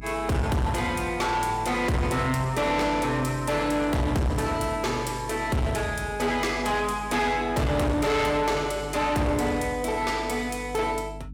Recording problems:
distorted audio; soft clipping, signal-to-distortion ratio 7 dB
hum; 50 Hz, harmonics up to 300 Hz, SNR 16 dB

